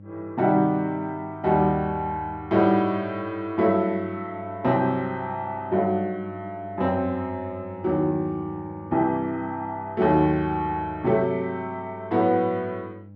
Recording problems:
hum; 50 Hz, harmonics up to 600 Hz, SNR 19 dB

